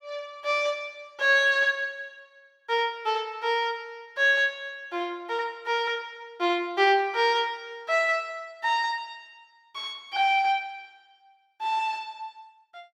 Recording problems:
none

